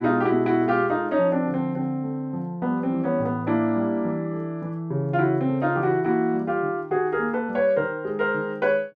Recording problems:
none

